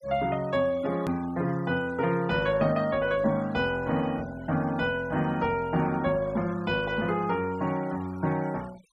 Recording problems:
denoising artefacts; signal-to-artefact ratio 21 dB
edit click; at 1 s

